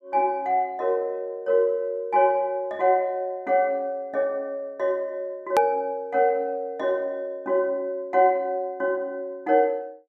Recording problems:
hard cut with a click; at 5.5 s

